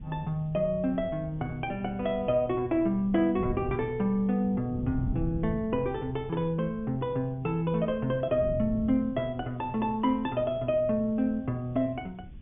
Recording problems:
treble cut off; nothing above 3.5 kHz
hiss; SNR 42 dB
wind noise; below 160 Hz, SNR 13 dB

